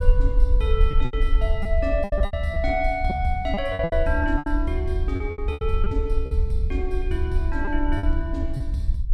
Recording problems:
low-frequency rumble; below 52 Hz, SNR 0 dB
lost packets; 11% of the sound replaced, filled with repeated pitch periods

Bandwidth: 14.5 kHz